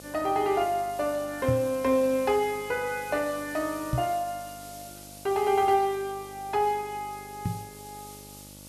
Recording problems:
hum; 50 Hz, harmonics up to 1.4 kHz, SNR 22 dB
background hiss; SNR 18 dB
microphone thump; at 1.5 s, at 4 s and at 7.5 s; peak +3 dB vs average level

